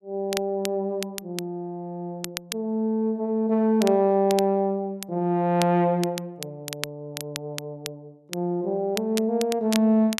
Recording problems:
crackle; vinyl, SNR 12 dB

